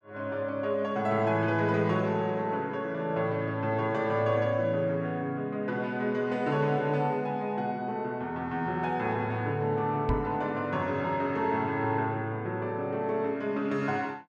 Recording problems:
microphone thump; at 10 s; peak +4 dB vs average level

